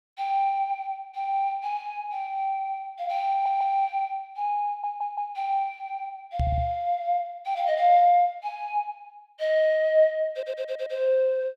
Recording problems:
stutter; 4 times, first at 3.5 s
knock on the microphone; at 6.5 s; peak +2 dB vs average level

